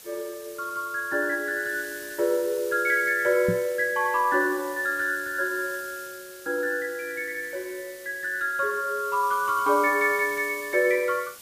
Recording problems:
hiss; slope 0 dB per octave, SNR 16 dB
microphone thump; at 3.5 s; peak +2 dB vs average level

